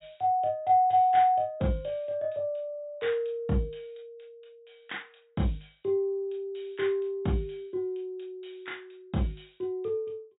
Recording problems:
treble missing; nothing above 4 kHz

